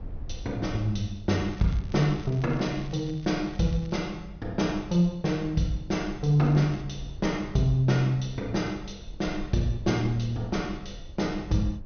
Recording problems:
low-pass filter; nothing above 6.3 kHz
low-frequency rumble; below 76 Hz, SNR 16 dB
crackling; from 1.5 to 4 s and at 6.5 s; loose cable, SNR 25 dB

